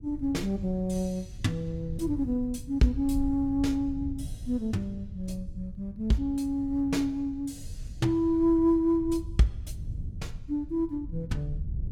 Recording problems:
rumble; below 98 Hz, SNR 12 dB

